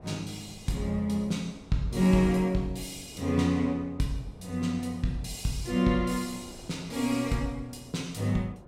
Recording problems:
wind on the microphone; below 520 Hz, SNR 21 dB

